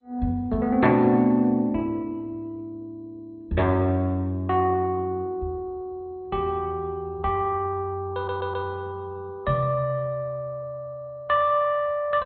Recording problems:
codec artefacts; MP2, log-spectral distance 2 dB, nothing above 4.1 kHz
audio stuttering; at 8 s

